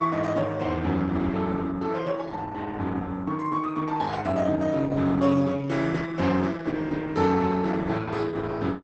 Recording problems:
lossy codec; Opus, log-spectral distance 4 dB, nothing above 8 kHz

